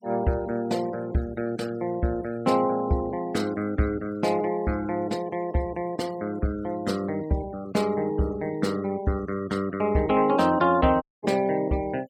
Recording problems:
denoising artefacts; signal-to-artefact ratio 22 dB
audio cutting out; at 11 s

